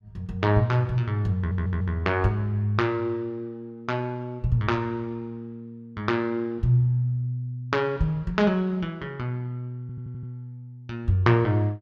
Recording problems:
stutter; at 1.5 s and at 10 s

